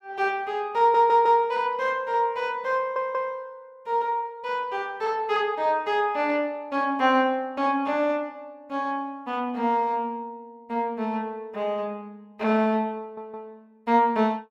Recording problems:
audio stuttering; at 1 s, at 3 s and at 13 s

